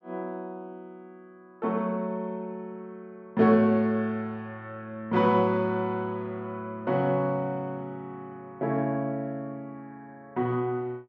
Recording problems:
none

